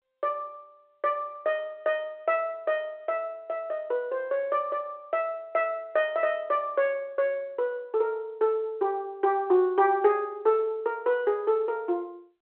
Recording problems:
phone line; 300 Hz to 3.3 kHz, G.711

